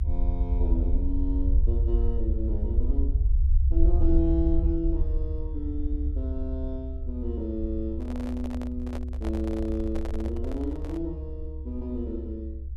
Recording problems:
low-frequency rumble; below 68 Hz, SNR -4 dB
handling noise; from 8 to 11 s; peak -3 dB vs average level

